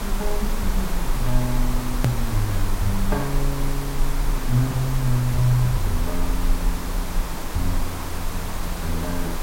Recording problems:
hum; 50 Hz, harmonics up to 1.1 kHz, SNR 27 dB
background hiss; SNR 5 dB
low-frequency rumble; below 36 Hz, strongest tone 20 Hz, SNR 4 dB
click at an edit; at 2 s

